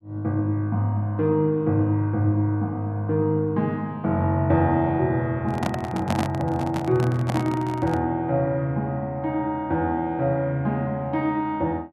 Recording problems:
handling noise; from 5.5 to 8 s; peak +3 dB vs average level

